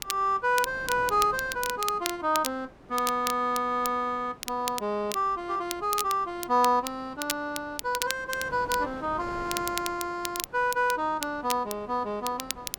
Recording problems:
wind on the microphone; below 850 Hz, SNR 20 dB
crackle; vinyl, SNR 8 dB

